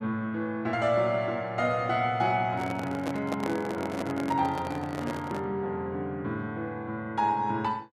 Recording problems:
handling noise; from 2.5 to 5.5 s; peak 0 dB vs average level

